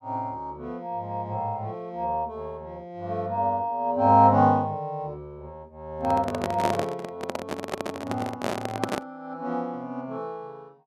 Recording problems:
microphone handling noise; from 6 to 9 s; peak +4 dB vs average level

